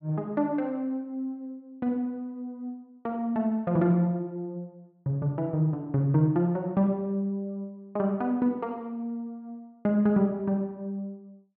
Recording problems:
none

